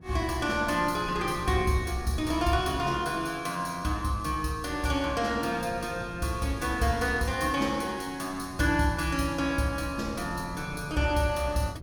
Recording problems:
wind on the microphone; below 250 Hz, SNR 16 dB

